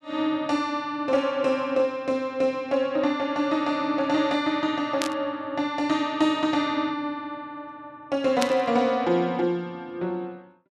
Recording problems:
static burst; at 5 s and at 8.5 s; peak +2 dB vs average level

